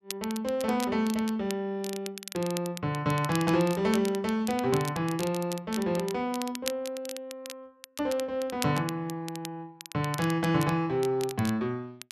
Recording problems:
crackle; vinyl, SNR 12 dB

